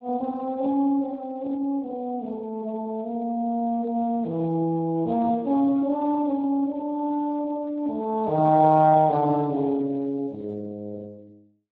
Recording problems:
codec artefacts; Speex, log-spectral distance 2 dB

